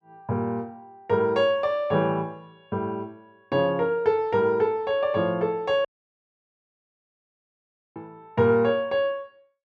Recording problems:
audio cutting out; at 6 s for 2 s

